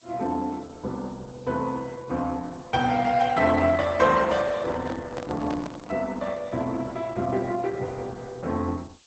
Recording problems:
codec artefacts; Opus, log-spectral distance 5 dB, nothing above 8 kHz
background hiss; slope +2 dB per octave, SNR 29 dB
handling noise; from 4.5 to 6 s; peak -2 dB vs average level

